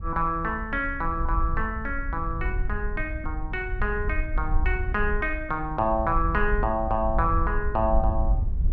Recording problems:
wind noise; below 60 Hz, SNR 3 dB

